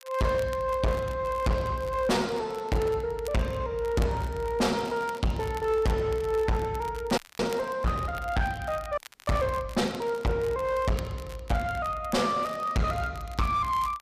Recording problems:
distortion; hard clipping, uneven, signal-to-distortion ratio 5 dB
crackle; vinyl, SNR 21 dB
frozen audio; at 7 s and at 9 s

